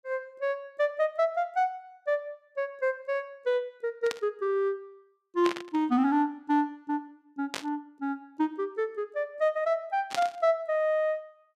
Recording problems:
static burst; 4 times, first at 4 s; peak 0 dB vs average level

